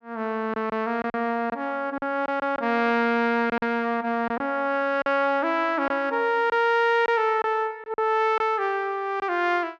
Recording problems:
packet loss; 6% of the sound replaced, filled with silence

